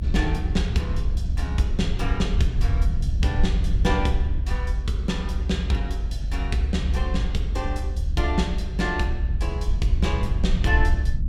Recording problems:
electrical hum; 50 Hz, harmonics up to 650 Hz, SNR 17 dB
low-frequency rumble; below 70 Hz, SNR -2 dB

